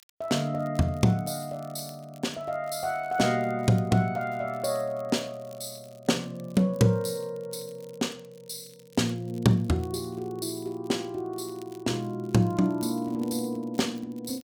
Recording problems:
crackling; vinyl, SNR 28 dB

